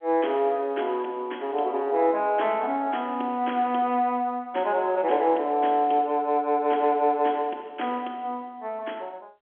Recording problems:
phone line; 260 Hz to 3.4 kHz, G.711

